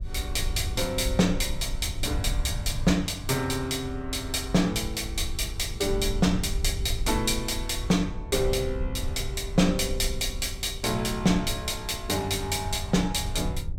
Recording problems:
low-frequency rumble; below 78 Hz, SNR 8 dB

